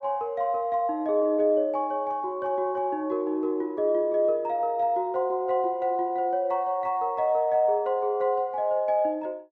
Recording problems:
none

